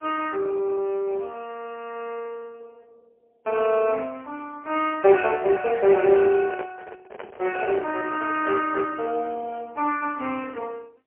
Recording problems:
phone line; 280 Hz to 3.1 kHz, AMR-NB, then MP3
handling noise; from 6.5 to 9 s; peak -6 dB vs average level

